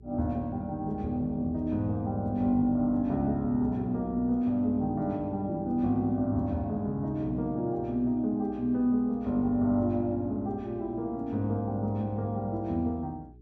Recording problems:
electrical hum; 60 Hz, harmonics up to 420 Hz, SNR 22 dB

